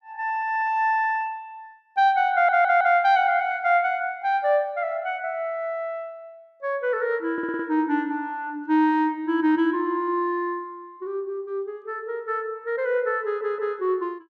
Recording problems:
stutter; at 2.5 s, at 7.5 s and at 13 s

